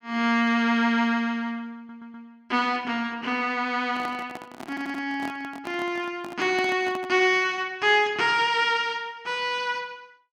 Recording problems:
audio stuttering; at 2 s and at 4.5 s
handling noise; from 4 to 7 s; peak -7 dB vs average level

